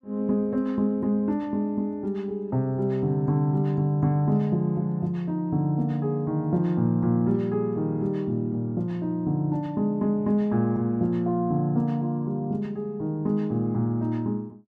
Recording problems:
none

